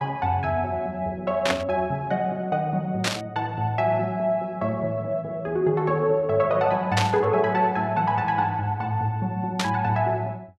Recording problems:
burst of static; 4 times, first at 1.5 s; peak +4 dB vs average level

